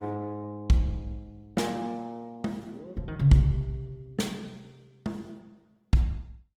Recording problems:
codec artefacts; Opus, log-spectral distance 2 dB, nothing above 19 kHz

